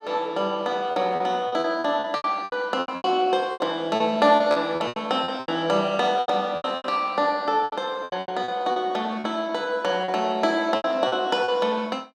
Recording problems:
lost packets; 15% of the sound replaced, filled with repeated pitch periods

